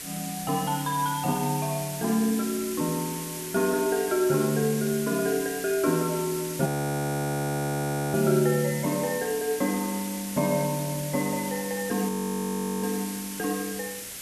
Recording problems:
background hiss; SNR 8 dB
frozen audio; at 6.5 s for 1.5 s and at 12 s for 0.5 s

